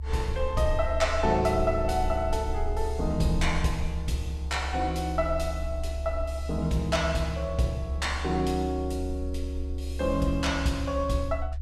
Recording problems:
rumble; below 70 Hz, strongest tone 70 Hz, SNR 5 dB

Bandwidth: 15 kHz